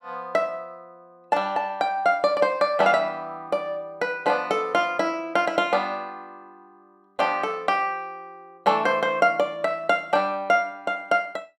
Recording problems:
none

